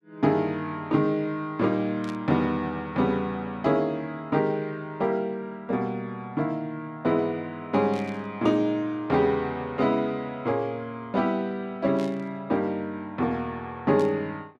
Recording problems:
burst of static; 4 times, first at 2 s; peak -12 dB vs average level

